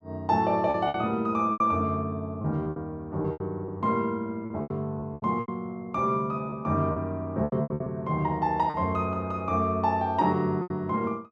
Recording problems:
lost packets; 10% of the sound replaced, filled with repeated pitch periods

